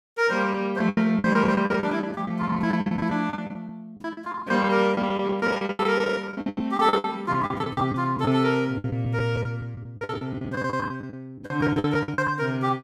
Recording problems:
lost packets; 21% of the sound replaced, filled with the last packet

